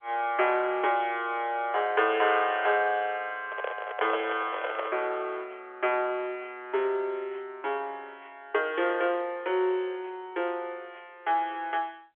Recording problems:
telephone audio; 340 Hz to 3.4 kHz, G.711
microphone handling noise; from 3.5 to 5 s; peak +1 dB vs average level

